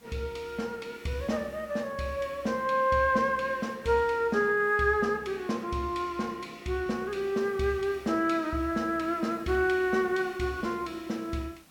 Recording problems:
background hiss; slope -2 dB per octave, SNR 27 dB

